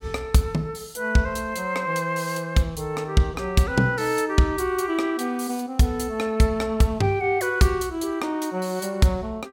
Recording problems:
none

